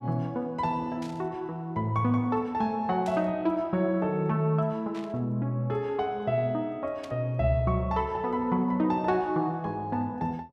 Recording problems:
burst of static; 4 times, first at 1 s; peak -12 dB vs average level

